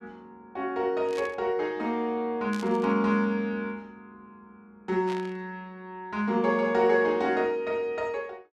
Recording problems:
static burst; at 1 s, at 2.5 s and at 5 s; peak -11 dB vs average level

